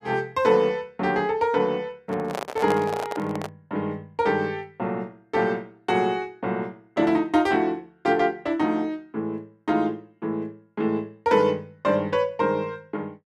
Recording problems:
microphone handling noise; from 2 to 3.5 s; peak 0 dB vs average level

